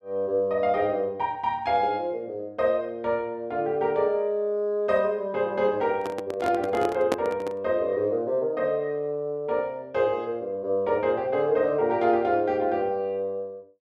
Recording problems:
microphone handling noise; from 6 to 7.5 s; peak +4 dB vs average level

